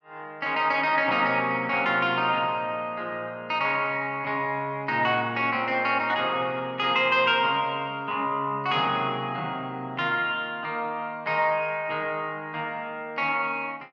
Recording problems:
none

